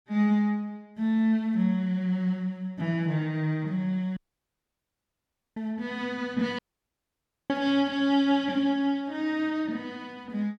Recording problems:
audio cutting out; at 4 s for 1.5 s and at 6.5 s for 1 s

